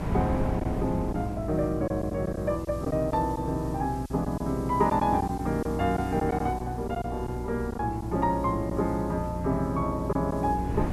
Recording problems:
electrical hum; 60 Hz, harmonics up to 360 Hz, SNR 9 dB
background hiss; slope +3 dB per octave, SNR 25 dB
wind on the microphone; below 290 Hz, SNR 12 dB
lost packets; 4% of the sound replaced, filled with silence

